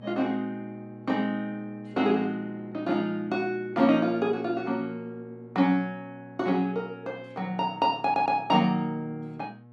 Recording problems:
mains hum; 60 Hz, harmonics up to 1.3 kHz, SNR 21 dB
stutter; at 8 s

